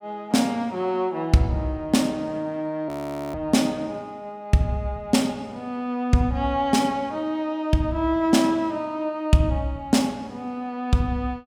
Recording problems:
frozen audio; at 3 s

